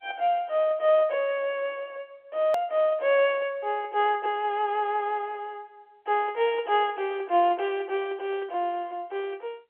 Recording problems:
telephone audio; 280 Hz to 3.5 kHz, G.711
hard cut with a click; at 2.5 s

